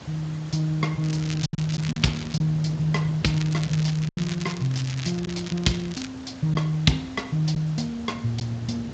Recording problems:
codec artefacts; Speex, log-spectral distance 6 dB, nothing above 7.3 kHz
background hiss; slope -4 dB per octave, SNR 18 dB
wind on the microphone; below 260 Hz, SNR 16 dB
lost packets; 3% of the sound replaced, filled with silence
crackle; from 1 to 2.5 s and from 3.5 to 6 s; loose cable, SNR 13 dB

